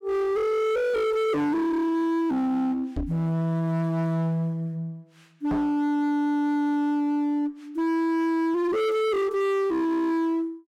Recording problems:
distortion; hard clipping, uneven, signal-to-distortion ratio 8 dB
knock on the microphone; at 3 s and at 5.5 s; peak +1 dB vs average level

